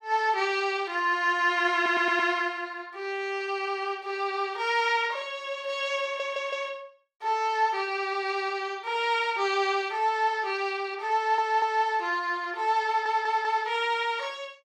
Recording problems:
stutter; 4 times, first at 2 s

